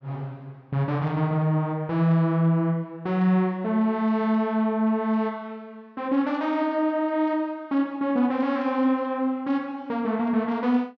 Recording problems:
none

